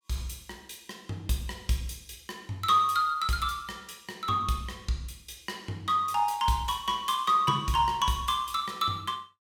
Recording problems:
none

